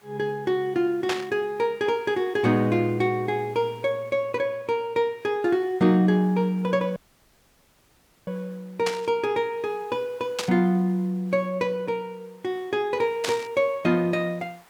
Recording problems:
background hiss; SNR 30 dB
burst of static; 4 times, first at 1 s; peak +1 dB vs average level
audio cutting out; at 7 s for 1.5 s

